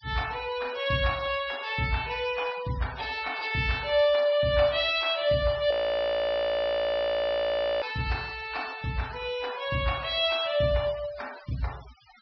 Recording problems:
treble cut off; nothing above 5.5 kHz
denoising artefacts; signal-to-artefact ratio 19 dB
audio freezing; at 5.5 s for 2 s

